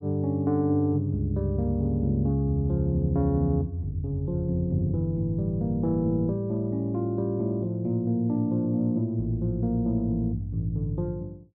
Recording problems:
none

